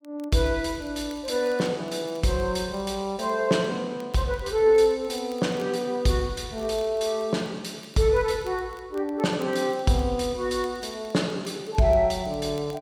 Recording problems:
crackle; vinyl, SNR 30 dB

